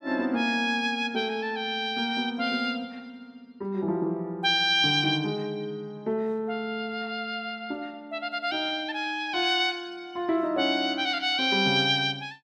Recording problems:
none

